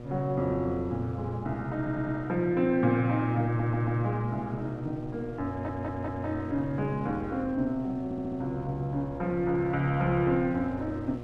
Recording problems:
hum; 60 Hz, harmonics up to 1.3 kHz, SNR 13 dB
wind noise; below 240 Hz, SNR 21 dB
audio stuttering; 4 times, first at 2 s

